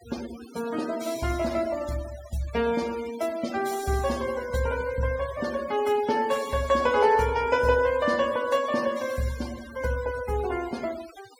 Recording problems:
noise reduction artefacts; signal-to-artefact ratio 16 dB

